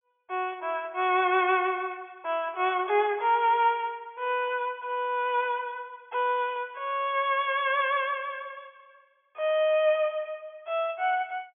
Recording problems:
treble cut off; nothing above 3.4 kHz

